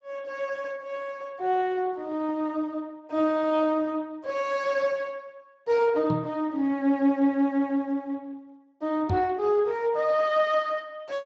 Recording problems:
lossy codec; Speex, log-spectral distance 2 dB
microphone thump; at 6 s and at 9 s; peak +1 dB vs average level

